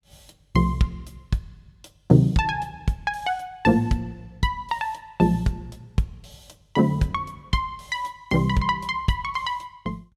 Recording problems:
none

